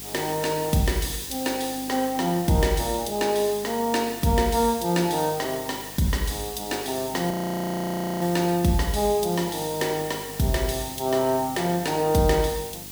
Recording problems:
electrical hum; 50 Hz, harmonics up to 900 Hz, SNR 22 dB
hiss; slope +1 dB per octave, SNR 11 dB
frozen audio; at 7.5 s for 1 s

